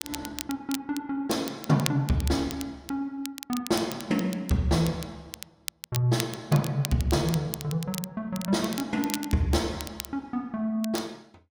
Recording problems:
crackle; vinyl, SNR 10 dB

